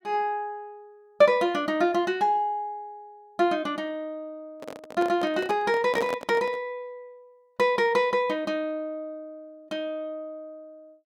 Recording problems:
microphone handling noise; from 4.5 to 6.5 s; peak -2 dB vs average level

